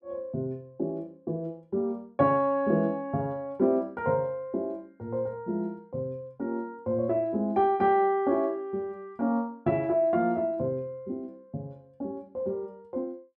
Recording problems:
none

